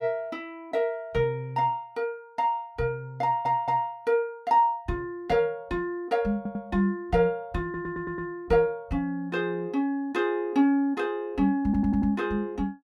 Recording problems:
audio stuttering; 4 times, first at 3 s

